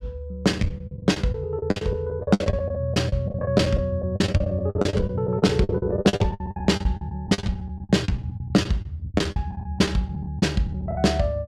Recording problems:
lost packets; 21% of the sound replaced, filled with the last packet

